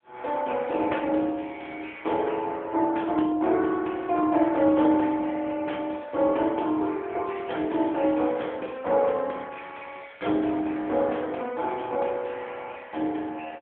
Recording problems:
telephone audio; 260 Hz to 3.3 kHz, AMR-NB

